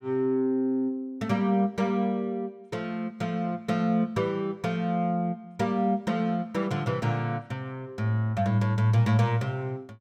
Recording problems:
none

